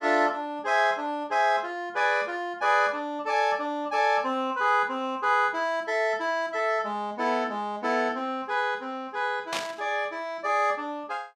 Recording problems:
burst of static; at 9.5 s; peak 0 dB vs average level

